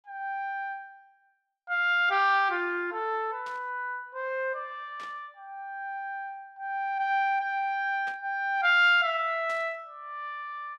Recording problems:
burst of static; 4 times, first at 3.5 s; peak -14 dB vs average level

